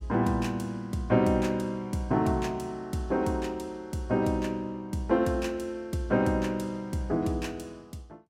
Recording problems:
none

